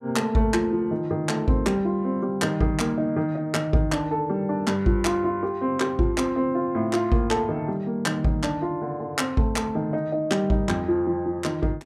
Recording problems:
none

